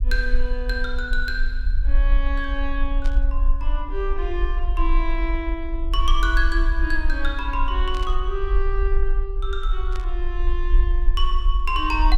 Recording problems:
rumble; below 44 Hz, SNR -3 dB
burst of static; at 3 s, at 8 s and at 10 s; peak -7 dB vs average level

